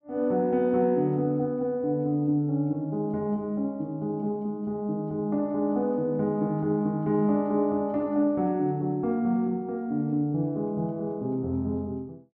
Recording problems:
treble missing; nothing above 8 kHz

